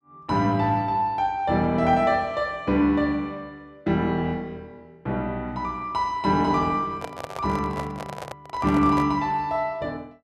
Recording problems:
microphone handling noise; from 7 to 9 s; peak -5 dB vs average level

